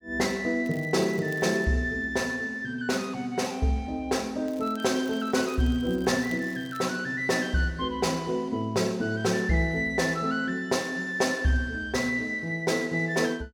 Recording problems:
crackling; at 0.5 s and from 4.5 to 7 s; loose cable, SNR 25 dB

